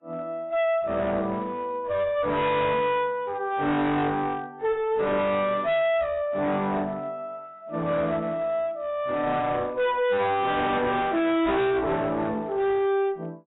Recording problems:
codec artefacts; AAC, log-spectral distance 2 dB, nothing above 3.8 kHz
distortion; hard clipping, uneven, signal-to-distortion ratio 6 dB

